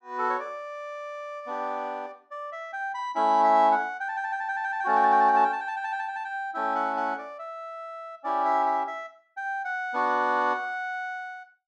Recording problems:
none

